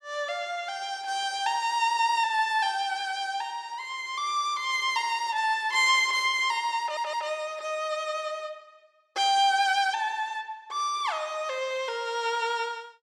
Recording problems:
stutter; at 7 s

